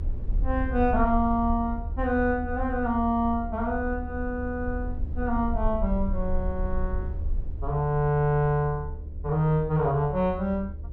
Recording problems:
electrical hum; 60 Hz, harmonics up to 600 Hz, SNR 24 dB
rumble; below 74 Hz, SNR 7 dB

